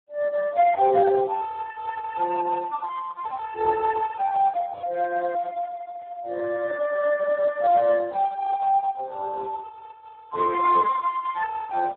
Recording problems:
telephone audio; 370 Hz to 2.1 kHz, Speex

